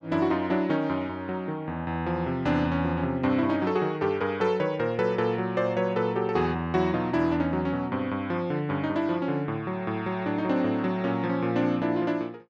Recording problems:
none

